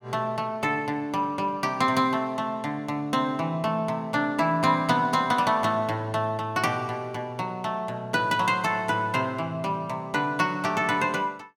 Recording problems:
none

